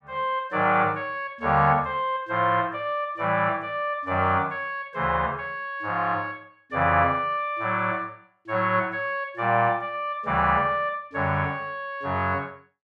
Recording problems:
none

